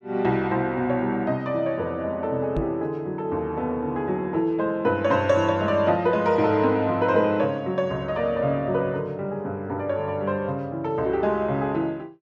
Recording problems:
microphone thump; at 2.5 s; peak -1 dB vs average level

